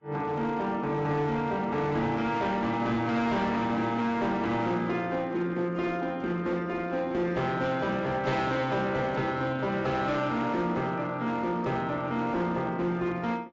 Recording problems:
lossy compression; AAC, log-spectral distance 2 dB, nothing above 7.3 kHz
distorted audio; hard clipping, uneven, signal-to-distortion ratio 12 dB

